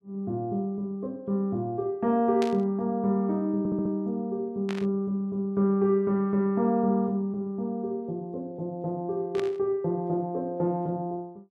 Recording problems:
static burst; at 2.5 s, at 4.5 s and at 9.5 s; peak -4 dB vs average level
audio stuttering; at 3.5 s

